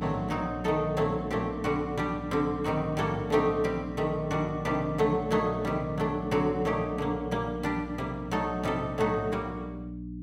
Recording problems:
hum; 60 Hz, harmonics up to 300 Hz, SNR 9 dB

